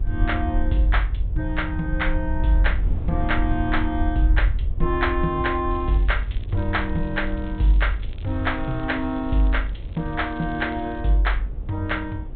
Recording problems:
low-pass filter; nothing above 4 kHz
hum; 60 Hz, harmonics up to 1.3 kHz, SNR 27 dB
low-frequency rumble; below 70 Hz, SNR 5 dB
wind noise; below 250 Hz, SNR 17 dB
crackle; from 5.5 to 11 s; loose cable, SNR 27 dB

